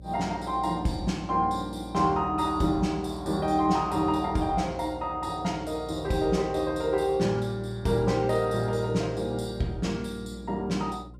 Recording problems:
hum; 60 Hz, harmonics up to 600 Hz, SNR 17 dB

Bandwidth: 15 kHz